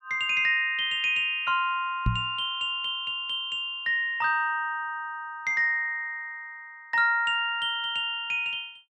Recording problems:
knock on the microphone; at 2 s; peak +4 dB vs average level

